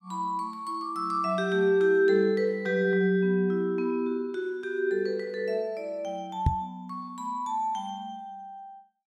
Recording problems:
knock on the microphone; at 6.5 s; peak +7 dB vs average level

